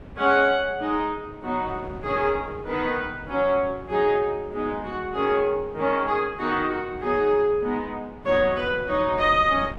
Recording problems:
wind noise; below 450 Hz, SNR 18 dB

